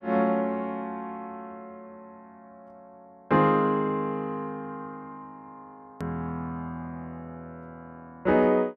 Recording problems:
hard cut with a click; at 6 s

